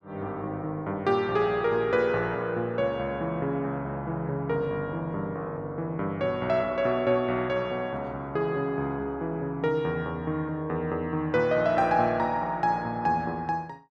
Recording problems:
none

